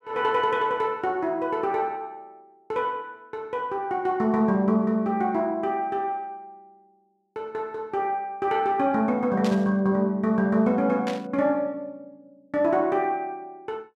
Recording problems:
burst of static; at 9.5 s and at 11 s; peak -6 dB vs average level

